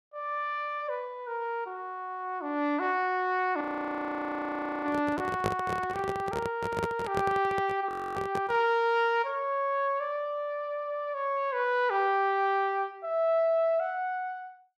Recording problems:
handling noise; from 3.5 to 8.5 s; peak +3 dB vs average level
frozen audio; at 3.5 s for 1 s and at 8 s

